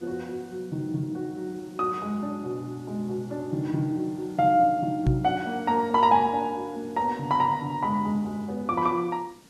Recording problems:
hiss; SNR 27 dB
knock on the microphone; at 5 s; peak +6 dB vs average level

